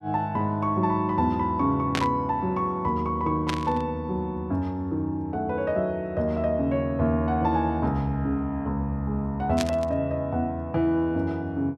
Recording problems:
burst of static; at 2 s, at 3.5 s and at 9.5 s; peak +1 dB vs average level

